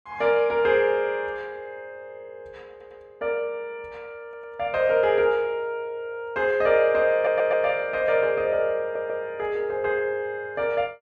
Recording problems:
stutter; 4 times, first at 2.5 s

